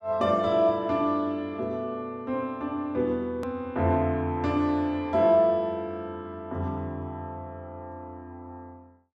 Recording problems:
hard cut with a click; at 3.5 s

